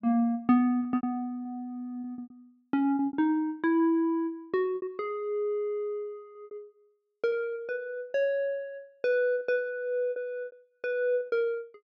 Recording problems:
lost packets; 8% of the sound replaced, filled with repeated pitch periods

